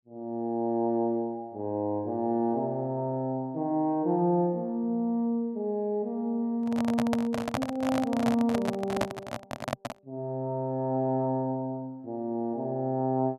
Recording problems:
microphone handling noise; from 6.5 to 10 s; peak +5 dB vs average level

